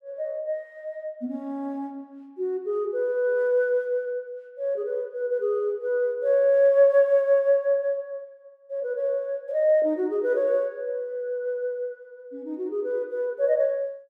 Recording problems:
none

